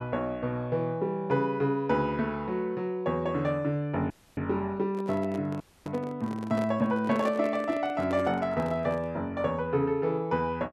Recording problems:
dropout; at 4 s and at 5.5 s
microphone handling noise; from 5 to 9 s; peak -4 dB vs average level

